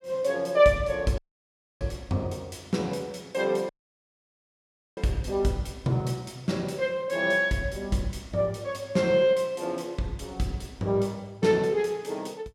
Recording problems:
audio cutting out; at 1 s for 0.5 s and at 3.5 s for 1.5 s

